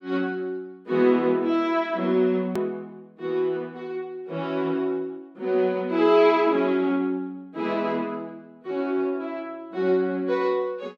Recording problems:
hard cut with a click; at 2.5 s

